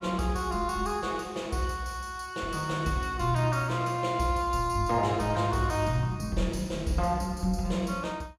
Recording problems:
none

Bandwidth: 16 kHz